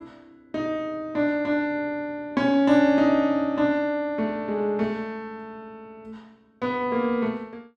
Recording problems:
none

